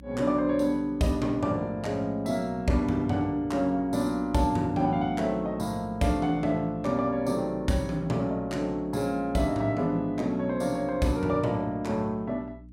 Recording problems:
hum; 60 Hz, harmonics up to 300 Hz, SNR 20 dB

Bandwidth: 16 kHz